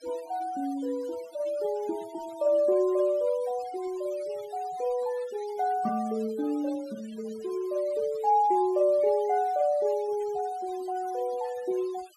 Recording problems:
noise reduction artefacts; signal-to-artefact ratio 21 dB

